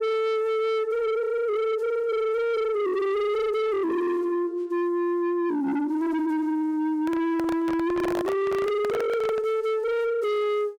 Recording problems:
distortion; soft clipping, signal-to-distortion ratio 7 dB
microphone handling noise; from 7 to 9.5 s; peak -2 dB vs average level

